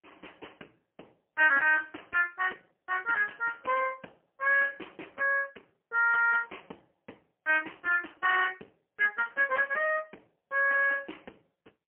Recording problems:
phone line; 320 Hz to 2.8 kHz, AMR-NB, then MP3

